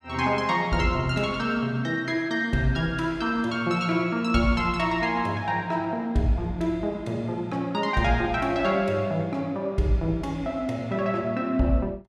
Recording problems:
none

